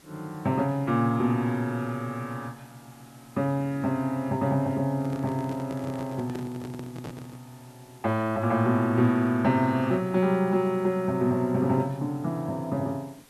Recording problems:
hiss; slope -3 dB per octave, SNR 27 dB
microphone handling noise; from 5 to 7.5 s; peak -7 dB vs average level

